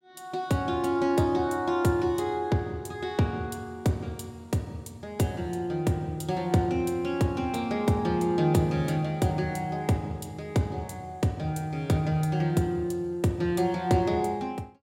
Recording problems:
none

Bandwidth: 16 kHz